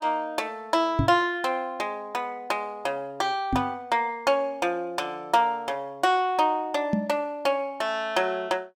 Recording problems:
microphone bump; at 1 s, at 3.5 s and at 7 s; peak +6 dB vs average level

